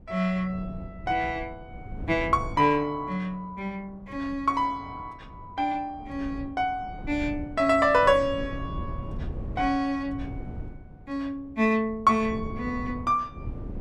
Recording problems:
wind on the microphone; below 180 Hz, SNR 13 dB

